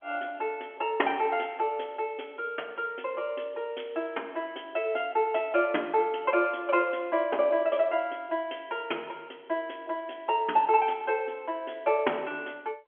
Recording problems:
telephone audio; 260 Hz to 3.3 kHz, G.711

